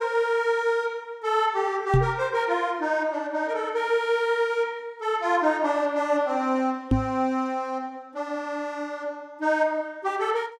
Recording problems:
knock on the microphone; at 2 s and at 7 s; peak +8 dB vs average level

